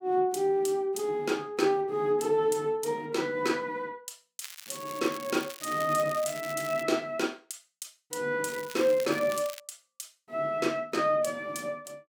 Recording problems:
crackling; from 4.5 to 7 s and from 8.5 to 9.5 s; loose cable, SNR 14 dB

